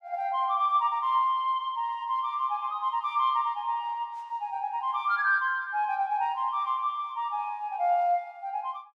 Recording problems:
none

